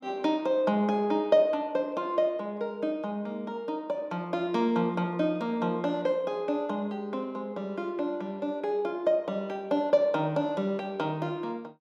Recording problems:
none

